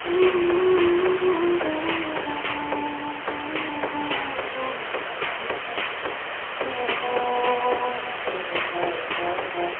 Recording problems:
telephone audio; 320 Hz to 3.2 kHz, AMR-NB, then MP3
background hiss; SNR 4 dB

